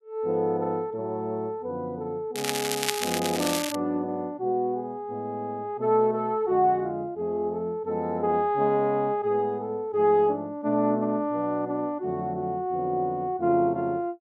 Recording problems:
crackling; from 2.5 to 4 s; loose cable, SNR 3 dB

